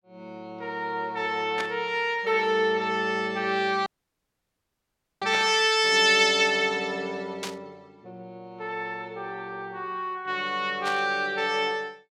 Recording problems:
static burst; 4 times, first at 1.5 s; peak -4 dB vs average level
audio cutting out; at 4 s for 1.5 s

